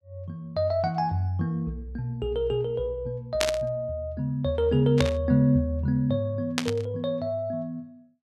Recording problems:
burst of static; at 3.5 s, at 5 s and at 6.5 s; peak +5 dB vs average level

